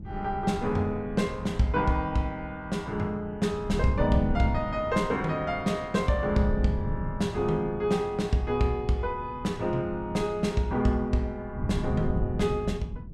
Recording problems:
wind noise; below 160 Hz, SNR 9 dB

